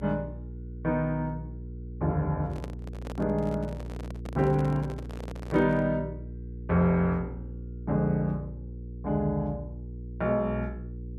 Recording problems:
electrical hum; 60 Hz, harmonics up to 480 Hz, SNR 11 dB
microphone handling noise; from 2.5 to 6 s; peak -7 dB vs average level

